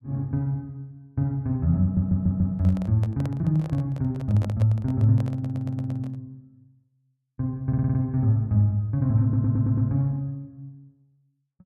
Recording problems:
audio stuttering; 4 times, first at 2 s
microphone handling noise; from 2 to 6 s; peak -8 dB vs average level

